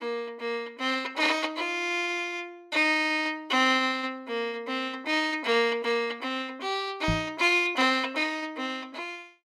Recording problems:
microphone thump; at 7 s; peak +1 dB vs average level

